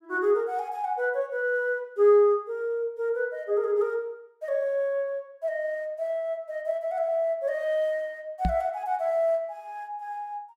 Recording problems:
microphone thump; at 8.5 s; peak +3 dB vs average level

